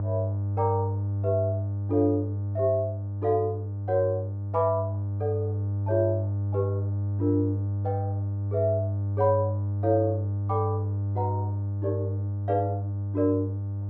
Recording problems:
hum; 50 Hz, harmonics up to 600 Hz, SNR 1 dB

